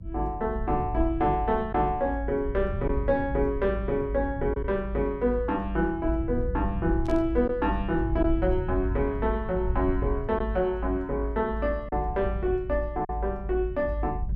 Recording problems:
rumble; below 72 Hz, strongest tone 52 Hz, SNR 6 dB
packet loss; 1.1% of the sound replaced, filled with silence
static burst; at 7 s; peak -15 dB vs average level

